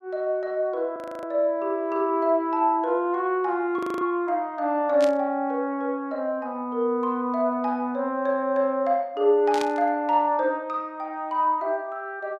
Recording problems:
frozen audio; at 1 s and at 4 s
burst of static; at 5 s and at 9.5 s; peak -4 dB vs average level

